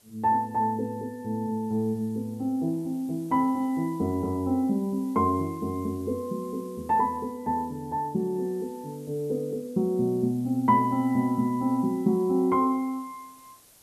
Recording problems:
background hiss; SNR 27 dB

